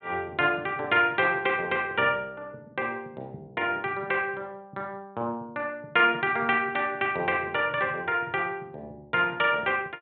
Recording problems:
treble cut off; nothing above 4 kHz

